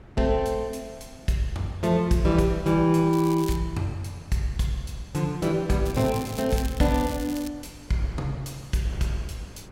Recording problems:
wind noise; below 430 Hz, SNR 21 dB
crackle; at 3 s and from 6 to 7.5 s; loose cable, SNR 15 dB

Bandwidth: 16 kHz